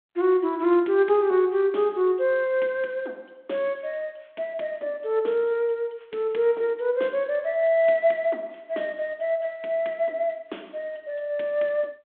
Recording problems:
phone line; 260 Hz to 3.7 kHz, G.726

